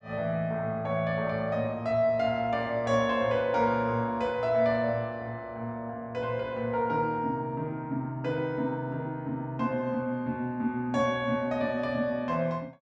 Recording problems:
none

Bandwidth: 12 kHz